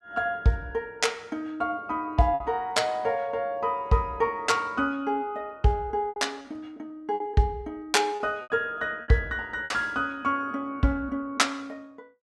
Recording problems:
packet loss; 4% of the sound replaced, filled with repeated pitch periods

